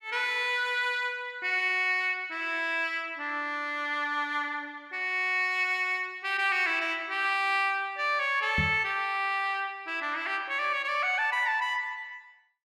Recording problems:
microphone bump; at 8.5 s; peak 0 dB vs average level

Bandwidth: 14.5 kHz